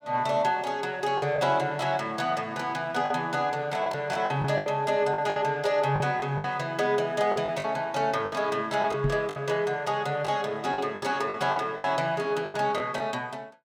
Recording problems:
packet loss; 9% of the sound replaced, filled with the last packet
microphone bump; at 9 s; peak +2 dB vs average level

